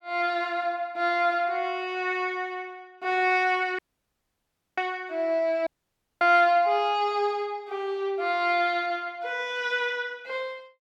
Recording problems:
audio cutting out; at 4 s for 1 s and at 5.5 s for 0.5 s

